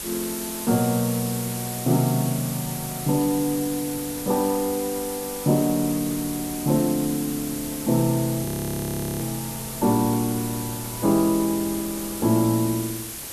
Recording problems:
hiss; slope -1 dB per octave, SNR 7 dB
wind on the microphone; below 480 Hz, SNR 23 dB
audio freezing; at 8.5 s for 1 s

